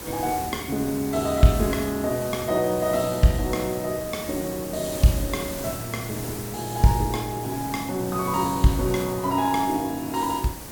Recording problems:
background hiss; SNR 10 dB

